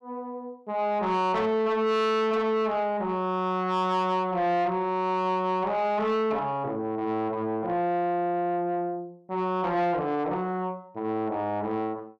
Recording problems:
distorted audio; soft clipping, signal-to-distortion ratio 11 dB

